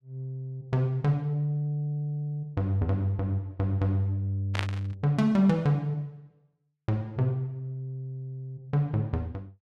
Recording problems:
burst of static; at 4.5 s; peak +2 dB vs average level

